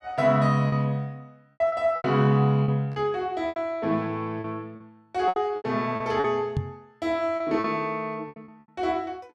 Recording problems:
packet loss; 11% of the sound replaced, filled with repeated pitch periods
knock on the microphone; at 6.5 s; peak +2 dB vs average level

